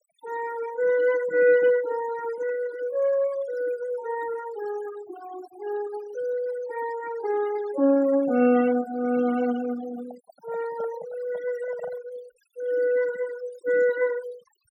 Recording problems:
noise reduction artefacts; signal-to-artefact ratio 17 dB
microphone handling noise; from 10 to 12 s; peak -9 dB vs average level

